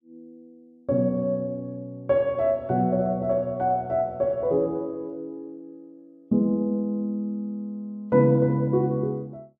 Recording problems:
none

